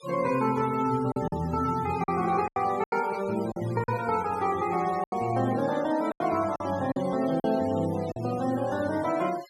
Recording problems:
denoising artefacts; signal-to-artefact ratio 18 dB
packet loss; 7% of the sound replaced, filled with silence

